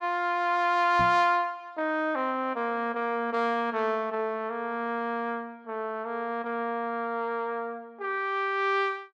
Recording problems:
knock on the microphone; at 1 s; peak -4 dB vs average level

